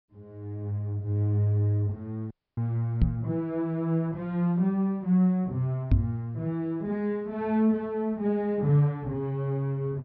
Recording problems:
treble missing; nothing above 5.5 kHz
audio cutting out; at 2.5 s
microphone bump; at 3 s and at 6 s; peak +9 dB vs average level

